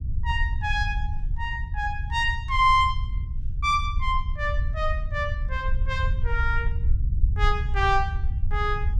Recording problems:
low-frequency rumble; below 70 Hz, SNR 2 dB

